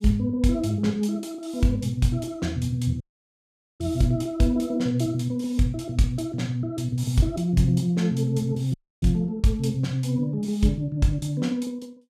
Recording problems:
dropout; at 3 s for 1 s and at 8.5 s

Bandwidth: 15 kHz